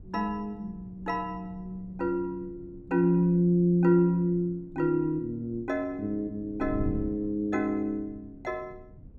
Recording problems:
wind noise; below 170 Hz, SNR 17 dB

